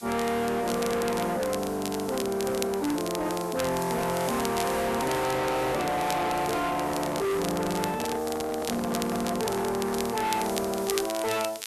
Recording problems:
distortion; hard clipping, signal-to-distortion ratio 7 dB
hiss; SNR 15 dB
crackling; vinyl, SNR 11 dB
handling noise; from 6.5 to 10 s; peak -4 dB vs average level

